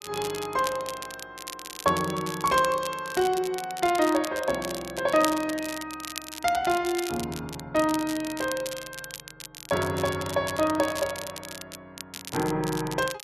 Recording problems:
crackle; vinyl, SNR 11 dB

